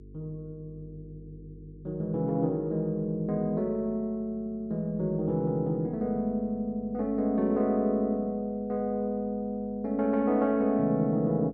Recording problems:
treble cut off; nothing above 8 kHz
hum; 50 Hz, harmonics up to 450 Hz, SNR 23 dB

